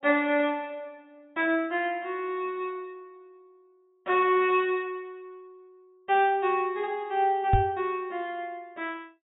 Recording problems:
treble cut off; nothing above 4 kHz
microphone thump; at 7.5 s; peak +6 dB vs average level

